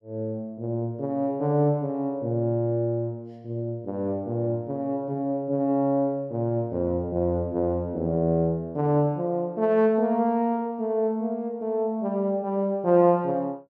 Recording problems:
none

